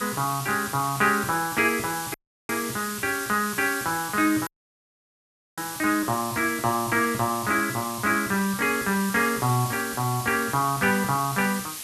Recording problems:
background hiss; SNR 9 dB
audio cutting out; at 2 s and at 4.5 s for 1 s

